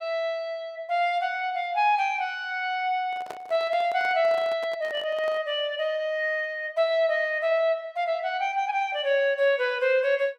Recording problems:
microphone handling noise; from 3 to 5.5 s; peak -8 dB vs average level

